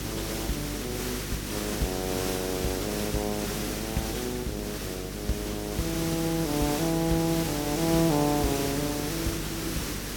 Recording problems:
hum; 50 Hz, harmonics up to 400 Hz, SNR 9 dB
background hiss; SNR 2 dB

